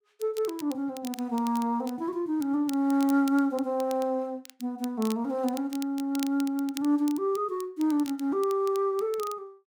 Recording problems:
crackle; vinyl, SNR 18 dB

